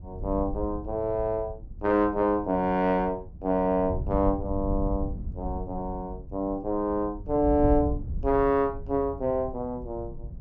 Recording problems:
wind on the microphone; below 88 Hz, SNR 10 dB

